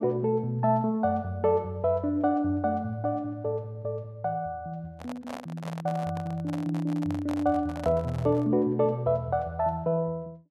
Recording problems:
handling noise; from 5 to 8.5 s; peak -6 dB vs average level

